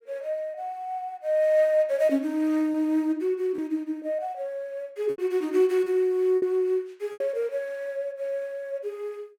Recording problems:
lost packets; 3% of the sound replaced, filled with repeated pitch periods

